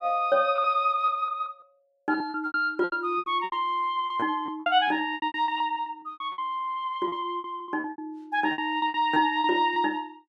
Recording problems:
lost packets; 17% of the sound replaced, filled with repeated pitch periods

